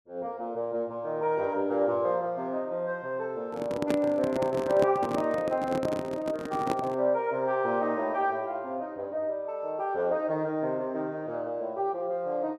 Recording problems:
handling noise; from 3.5 to 7 s; peak +3 dB vs average level

